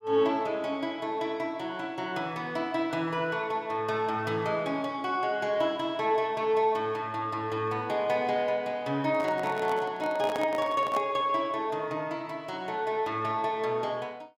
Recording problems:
microphone handling noise; from 9 to 11 s; peak -2 dB vs average level

